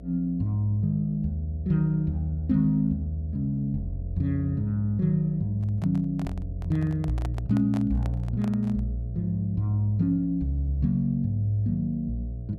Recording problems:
hum; 60 Hz, harmonics up to 720 Hz, SNR 16 dB
handling noise; from 5.5 to 9 s; peak -9 dB vs average level

